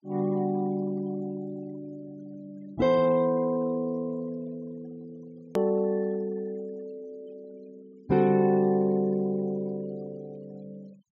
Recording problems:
treble missing; nothing above 7.5 kHz
noise reduction artefacts; signal-to-artefact ratio 26 dB
hard cut with a click; at 5.5 s

